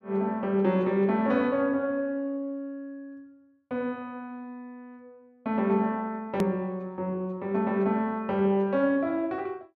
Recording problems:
click at an edit; at 6.5 s

